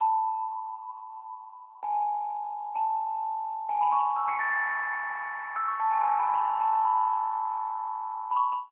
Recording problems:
phone line; 990 Hz to 2.2 kHz, AMR-NB

